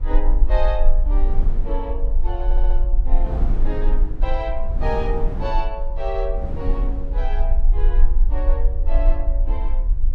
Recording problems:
low-frequency rumble; below 38 Hz, strongest tone 22 Hz, SNR -7 dB
wind on the microphone; below 220 Hz, SNR 4 dB
audio stuttering; at 2.5 s

